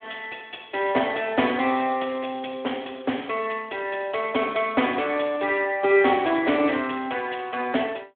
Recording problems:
telephone audio; 220 Hz to 3.5 kHz, Speex

